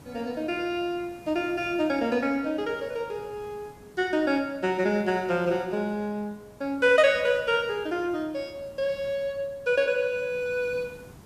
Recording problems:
hiss; slope -6 dB per octave, SNR 23 dB

